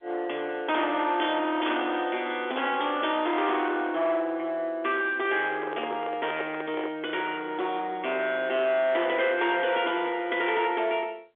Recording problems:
telephone audio; 320 Hz to 3.5 kHz, G.711
distortion; soft clipping, signal-to-distortion ratio 9 dB
microphone handling noise; from 5.5 to 7 s; peak -2 dB vs average level

